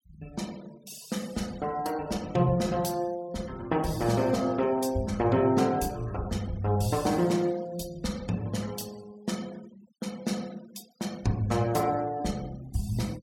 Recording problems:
denoising artefacts; signal-to-artefact ratio 21 dB

